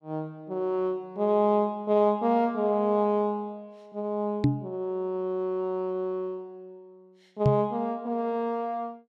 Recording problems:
microphone thump; at 4.5 s and at 7.5 s; peak +8 dB vs average level

